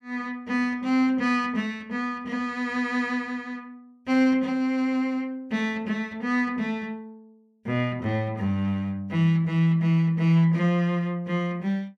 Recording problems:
none

